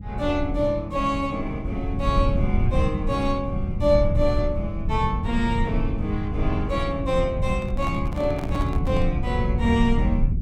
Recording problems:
rumble; below 110 Hz, SNR 2 dB
microphone handling noise; from 7.5 to 9 s; peak -8 dB vs average level

